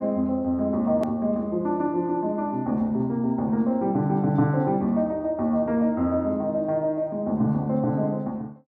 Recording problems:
edit click; at 1 s

